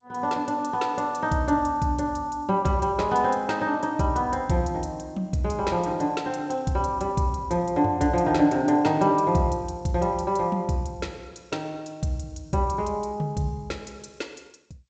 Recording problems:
codec artefacts; G.722, log-spectral distance 2 dB, nothing above 7.6 kHz

